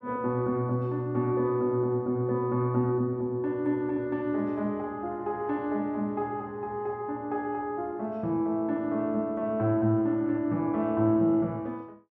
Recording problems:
none

